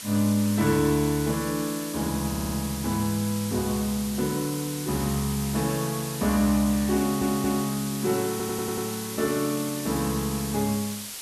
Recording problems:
background hiss; slope +2 dB per octave, SNR 8 dB
stutter; at 2.5 s, at 7 s and at 8.5 s

